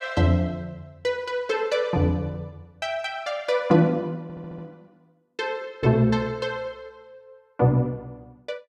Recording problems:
audio stuttering; at 4 s

